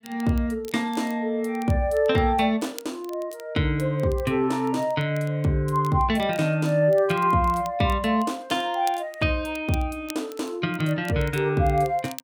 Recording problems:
crackle; vinyl, SNR 23 dB

